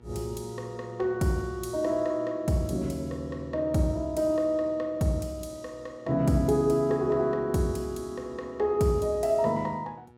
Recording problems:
mains hum; 60 Hz, harmonics up to 1.8 kHz, SNR 26 dB

